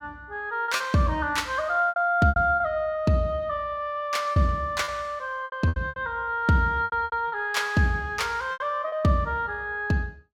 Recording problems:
packet loss; 9% of the sound replaced, filled with repeated pitch periods

